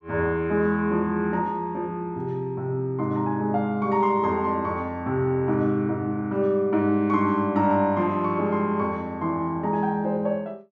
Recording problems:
none

